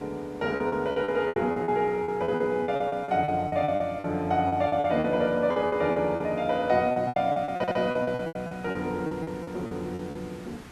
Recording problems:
background hiss; slope -5 dB per octave, SNR 22 dB
packet loss; 18% of the sound replaced, filled with repeated pitch periods
stutter; at 7.5 s

